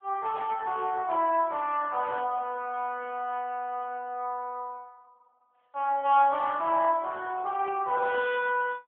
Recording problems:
telephone audio; 300 Hz to 3.3 kHz, AMR-NB

